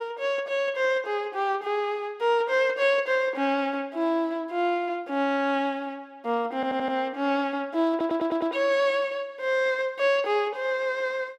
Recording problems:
stutter; at 6.5 s and at 8 s

